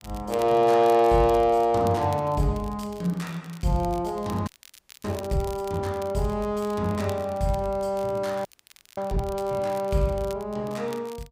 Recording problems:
crackle; vinyl, SNR 23 dB
frozen audio; at 4.5 s for 0.5 s and at 8.5 s for 0.5 s

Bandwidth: 15.5 kHz